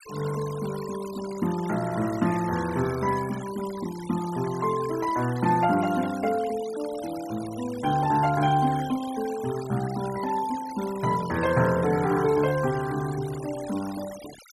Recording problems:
denoising artefacts; signal-to-artefact ratio 15 dB

